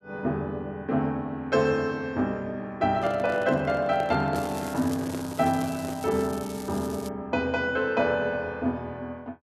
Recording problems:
handling noise; from 3 to 6 s; peak -4 dB vs average level
crackling; from 4.5 to 7 s; loose cable, SNR 16 dB

